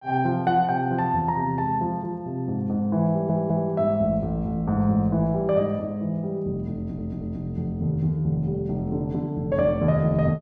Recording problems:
audio stuttering; at 3 s and at 7 s

